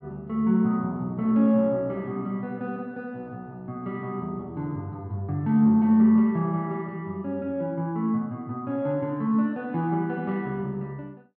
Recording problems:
none

